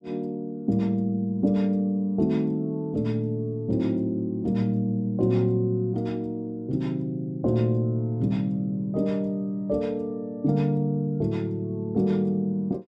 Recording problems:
none

